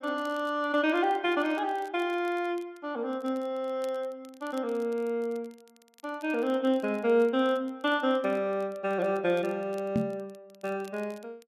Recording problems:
crackle; vinyl, SNR 29 dB
microphone thump; at 10 s; peak +4 dB vs average level

